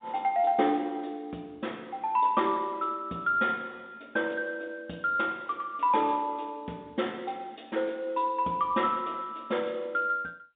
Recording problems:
telephone audio; 220 Hz to 3.7 kHz, G.711

